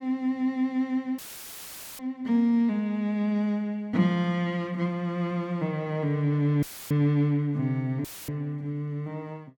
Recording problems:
dropout; at 1 s for 1 s, at 6.5 s and at 8 s; filled with static

